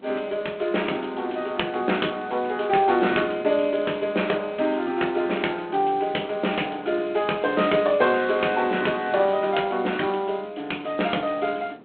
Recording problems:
telephone audio; 220 Hz to 3.4 kHz, G.726
wind noise; below 560 Hz, SNR 22 dB

